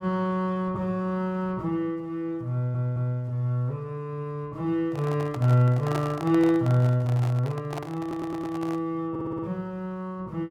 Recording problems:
stutter; at 2.5 s, at 8 s and at 9 s
handling noise; from 5 to 9 s; peak -1 dB vs average level

